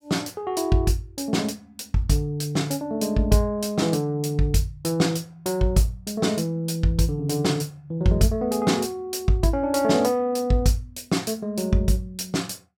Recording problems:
none

